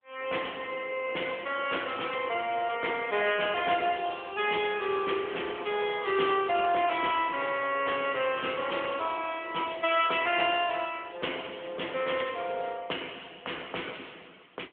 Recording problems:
telephone audio; 320 Hz to 3.4 kHz, AMR-NB

